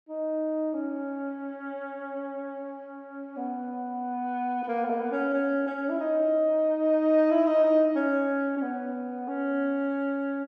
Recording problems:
none

